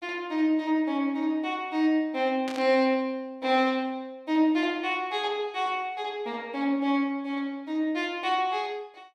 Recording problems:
burst of static; at 2.5 s; peak -7 dB vs average level

